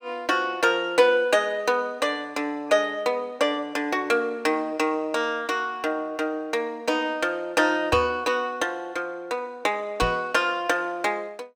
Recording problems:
knock on the microphone; at 8 s and at 10 s; peak -2 dB vs average level

